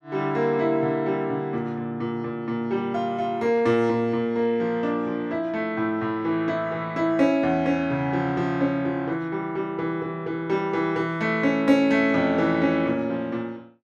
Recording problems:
none

